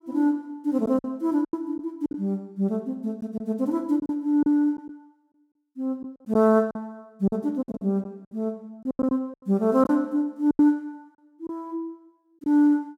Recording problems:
lost packets; 8% of the sound replaced, filled with silence

